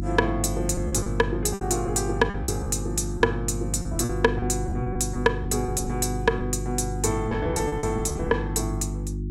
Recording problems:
hum; 50 Hz, harmonics up to 350 Hz, SNR 4 dB
lost packets; 9% of the sound replaced, filled with repeated pitch periods

